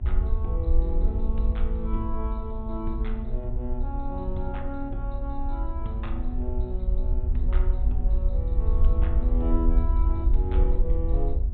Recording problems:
treble cut off; nothing above 4 kHz
mains hum; 60 Hz, harmonics up to 1.1 kHz, SNR 8 dB
low-frequency rumble; below 58 Hz, SNR -7 dB

